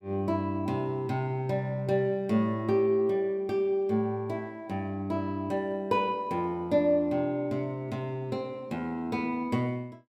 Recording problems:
none

